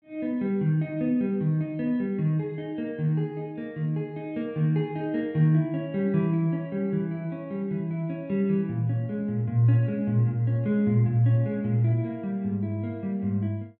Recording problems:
none

